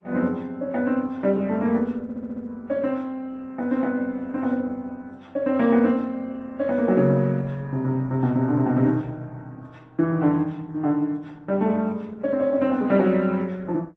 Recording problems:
codec artefacts; AAC, then Opus, log-spectral distance 2 dB
stutter; at 2 s

